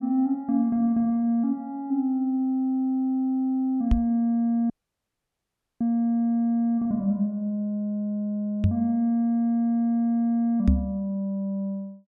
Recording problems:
microphone bump; at 4 s, at 8.5 s and at 11 s; peak +7 dB vs average level
audio cutting out; at 4.5 s for 1 s

